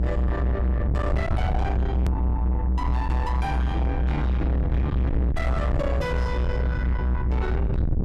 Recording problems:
distortion; soft clipping, signal-to-distortion ratio 6 dB
rumble; below 150 Hz, strongest tone 60 Hz, SNR -4 dB
edit click; at 2 s

